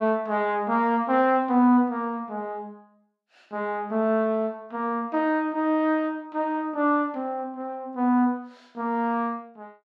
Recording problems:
none

